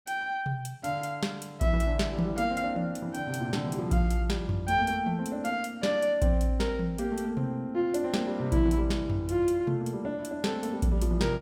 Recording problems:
none

